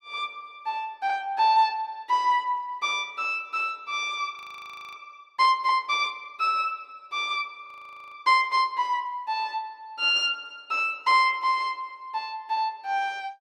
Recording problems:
audio freezing; at 4.5 s for 0.5 s and at 7.5 s

